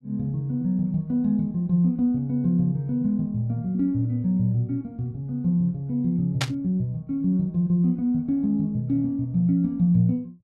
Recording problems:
static burst; at 6.5 s; peak +2 dB vs average level

